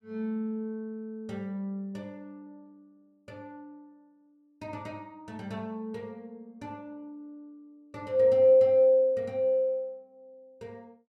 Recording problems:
none

